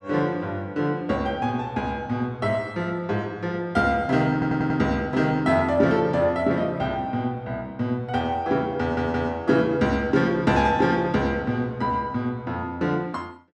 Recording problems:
stutter; at 4.5 s and at 9 s

